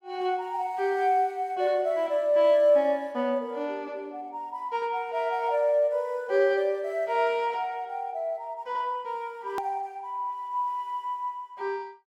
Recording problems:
hard cut with a click; at 9.5 s

